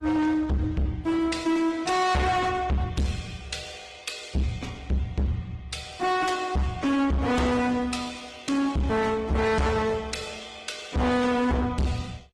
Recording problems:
lossy compression; MP3, then Opus, log-spectral distance 4 dB
distortion; hard clipping, signal-to-distortion ratio 6 dB

